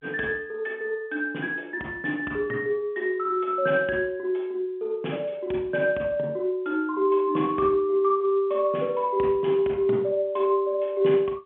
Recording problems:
phone line; 220 Hz to 3.3 kHz, G.711

